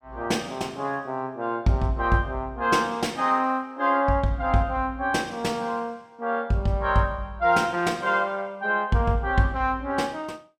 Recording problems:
none

